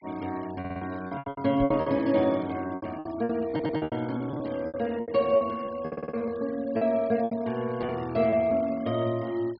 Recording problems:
treble cut off; nothing above 5.5 kHz
noise reduction artefacts; signal-to-artefact ratio 23 dB
lost packets; 14% of the sound replaced, filled with repeated pitch periods
stutter; at 0.5 s, at 3.5 s and at 6 s
microphone bump; at 1.5 s; peak 0 dB vs average level

